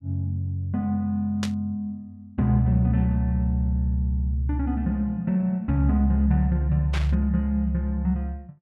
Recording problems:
burst of static; at 1.5 s and at 7 s; peak -3 dB vs average level

